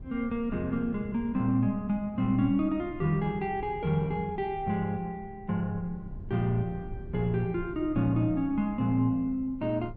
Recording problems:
low-frequency rumble; below 130 Hz, SNR 16 dB

